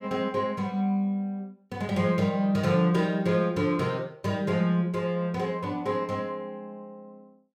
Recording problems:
none

